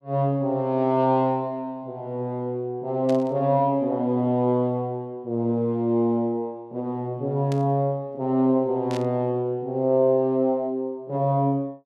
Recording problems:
static burst; at 3 s, at 7.5 s and at 9 s; peak -10 dB vs average level

